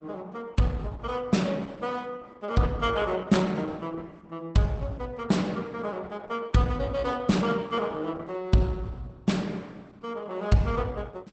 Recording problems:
lossy compression; Opus, log-spectral distance 3 dB, nothing above 8 kHz

